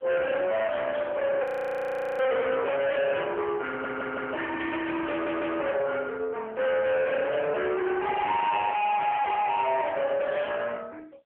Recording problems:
phone line; 950 Hz to 3.3 kHz, AMR-NB
distortion; hard clipping, uneven, signal-to-distortion ratio 5 dB
frozen audio; at 1.5 s for 1 s
stutter; at 3.5 s and at 5 s

